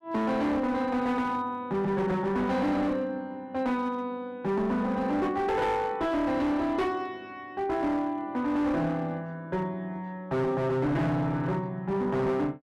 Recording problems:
distorted audio; hard clipping, uneven, signal-to-distortion ratio 10 dB

